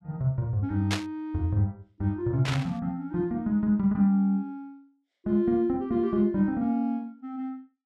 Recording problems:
burst of static; at 1 s and at 2.5 s; peak +2 dB vs average level

